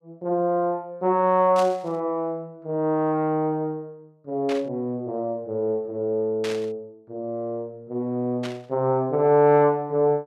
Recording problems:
static burst; 4 times, first at 1.5 s; peak -6 dB vs average level

